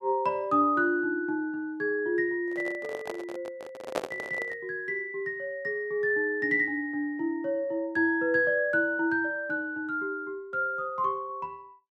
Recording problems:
microphone handling noise; from 2.5 to 4.5 s; peak +4 dB vs average level

